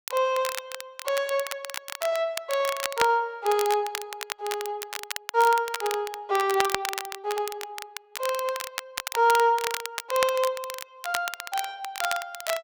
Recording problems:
crackle; vinyl, SNR 7 dB

